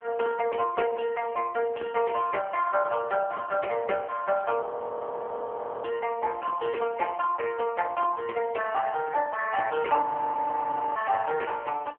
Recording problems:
phone line; 320 Hz to 3.2 kHz, AMR-NB
audio freezing; at 4.5 s for 1 s and at 10 s for 1 s

